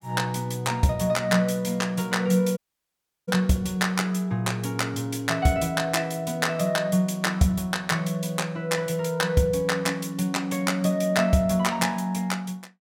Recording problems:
dropout; at 2.5 s for 0.5 s

